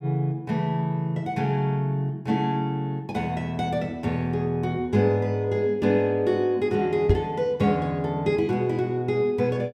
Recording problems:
microphone bump; at 7 s; peak +7 dB vs average level

